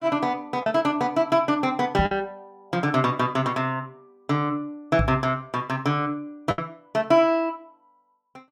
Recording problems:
packet loss; 2% of the sound replaced, filled with the last packet
microphone thump; at 2 s and at 5 s; peak +3 dB vs average level

